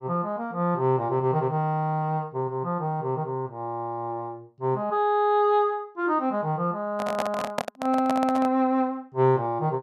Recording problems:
handling noise; from 7 to 8.5 s; peak +2 dB vs average level

